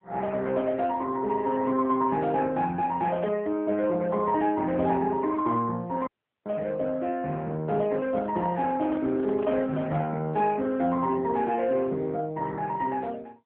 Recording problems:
telephone audio; 110 Hz to 3.4 kHz, AMR-NB
dropout; at 6 s
microphone handling noise; from 8 to 10 s; peak -8 dB vs average level

